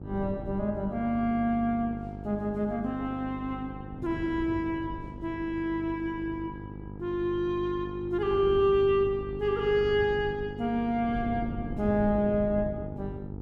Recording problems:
hum; 50 Hz, harmonics up to 950 Hz, SNR 12 dB
wind on the microphone; below 240 Hz, SNR 14 dB

